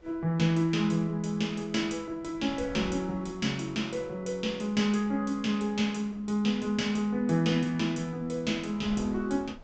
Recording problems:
treble missing; nothing above 8 kHz
wind on the microphone; below 460 Hz, SNR 23 dB

